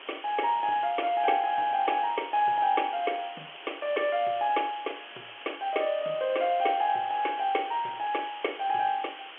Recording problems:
telephone audio; 260 Hz to 3.3 kHz, G.711
hiss; SNR 15 dB

